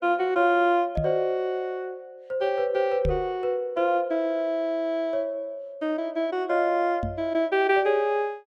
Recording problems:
microphone bump; at 1 s, at 3 s and at 7 s; peak 0 dB vs average level

